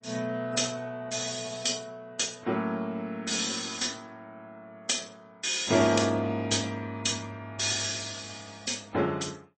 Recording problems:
codec artefacts; AAC, then MP3, log-spectral distance 7 dB, nothing above 8.2 kHz

